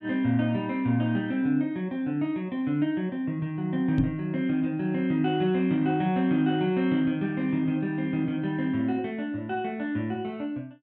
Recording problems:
knock on the microphone; at 4 s; peak +4 dB vs average level

